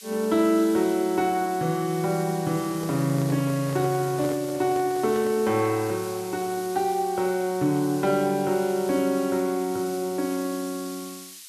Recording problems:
hiss; slope +7 dB per octave, SNR 16 dB
microphone handling noise; from 2.5 to 5.5 s; peak -8 dB vs average level

